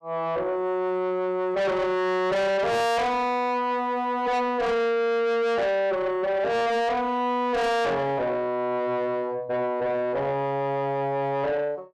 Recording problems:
distorted audio; soft clipping, signal-to-distortion ratio 6 dB

